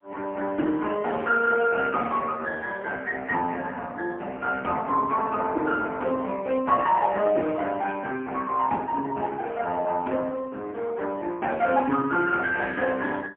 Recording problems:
phone line; 240 Hz to 2.8 kHz, AMR-NB, then MP3

